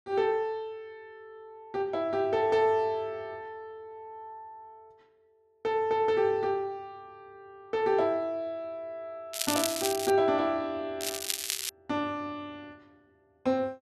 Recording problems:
crackle; at 9.5 s and at 11 s; loose cable, SNR 3 dB

